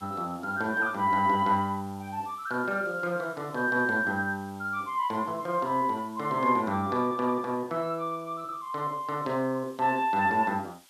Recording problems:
background hiss; slope +2 dB per octave, SNR 27 dB

